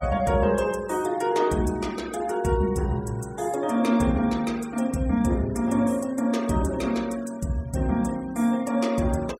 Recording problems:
noise reduction artefacts; signal-to-artefact ratio 21 dB

